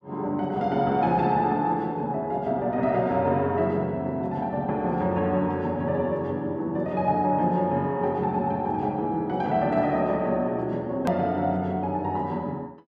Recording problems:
edit click; at 11 s

